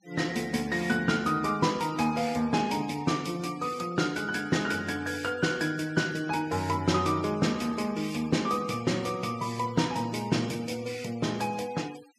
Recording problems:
noise reduction artefacts; signal-to-artefact ratio 20 dB

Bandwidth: 14.5 kHz